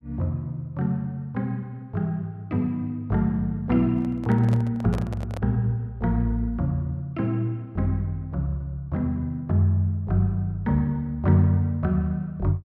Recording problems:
handling noise; from 4 to 5.5 s; peak -6 dB vs average level

